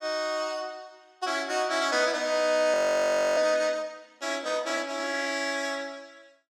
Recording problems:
frozen audio; at 2.5 s for 0.5 s

